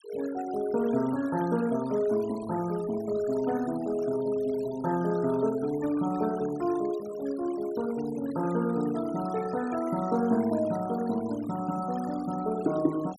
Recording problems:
denoising artefacts; signal-to-artefact ratio 19 dB

